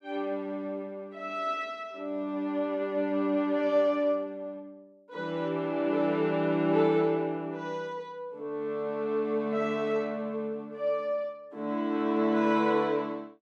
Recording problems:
none

